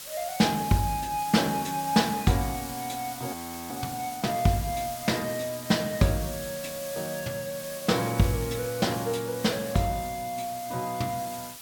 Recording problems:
background hiss; slope +1 dB per octave, SNR 10 dB
audio freezing; at 3.5 s

